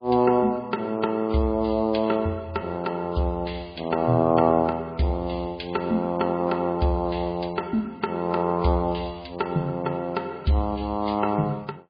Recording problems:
lossy codec; MP3, log-spectral distance 3 dB, nothing above 4.6 kHz

